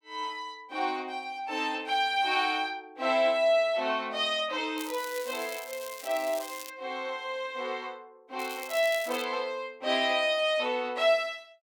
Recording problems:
crackling; from 5 to 6.5 s and at 8.5 s; loose cable, SNR 13 dB

